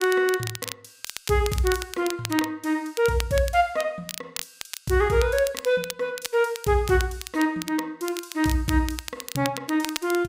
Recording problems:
crackling; vinyl, SNR 11 dB

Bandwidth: 15.5 kHz